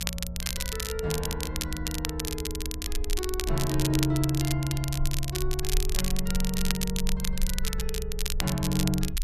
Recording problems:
low-frequency rumble; below 54 Hz, strongest tone 18 Hz, SNR 5 dB
crackle; vinyl, SNR 2 dB

